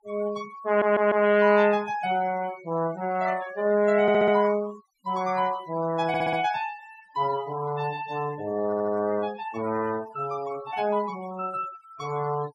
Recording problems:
denoising artefacts; signal-to-artefact ratio 18 dB
audio stuttering; 4 times, first at 0.5 s

